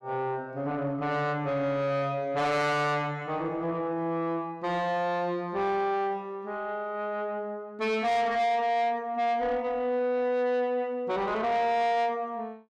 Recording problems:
distortion; soft clipping, signal-to-distortion ratio 10 dB

